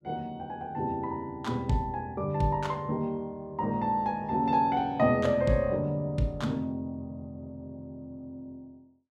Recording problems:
none

